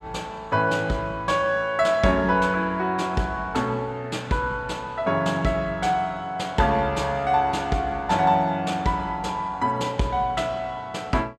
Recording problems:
none

